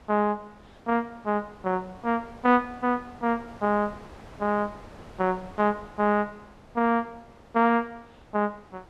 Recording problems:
wind on the microphone; below 1 kHz, SNR 22 dB

